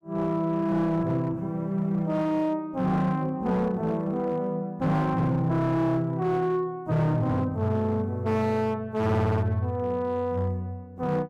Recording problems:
distorted audio; hard clipping, uneven, signal-to-distortion ratio 11 dB

